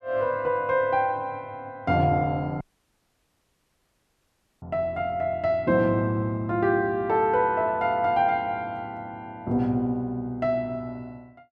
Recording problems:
dropout; at 2.5 s for 2 s

